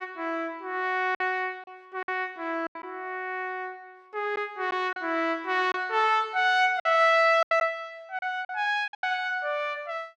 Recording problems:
lost packets; 6% of the sound replaced, filled with silence

